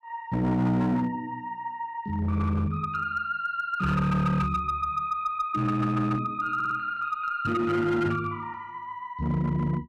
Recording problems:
distorted audio; hard clipping, uneven, signal-to-distortion ratio 11 dB
stutter; at 6.5 s

